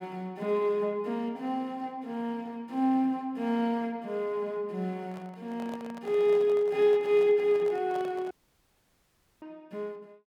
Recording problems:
microphone handling noise; from 5 to 8.5 s; peak -11 dB vs average level
audio cutting out; at 8.5 s for 1 s

